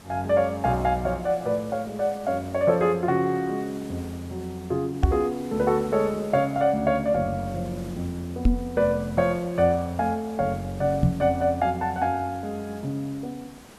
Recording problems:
background hiss; slope -4 dB per octave, SNR 20 dB
microphone thump; at 5 s, at 8.5 s and at 11 s; peak +9 dB vs average level

